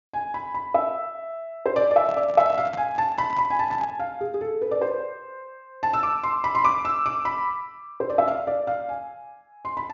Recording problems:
treble missing; nothing above 7.2 kHz
handling noise; from 2 to 4 s; peak -9 dB vs average level

